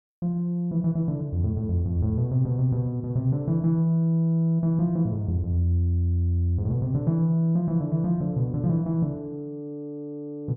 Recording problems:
none

